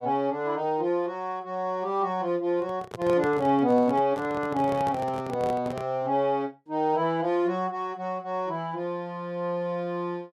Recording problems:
microphone handling noise; from 2.5 to 6 s; peak -4 dB vs average level

